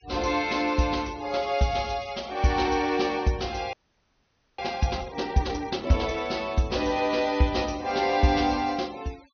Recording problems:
low-pass filter; nothing above 6.3 kHz
noise reduction artefacts; signal-to-artefact ratio 22 dB
audio freezing; at 3.5 s for 1 s

